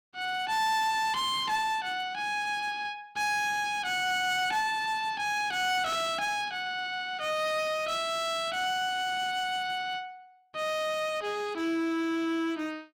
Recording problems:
distortion; hard clipping, signal-to-distortion ratio 10 dB

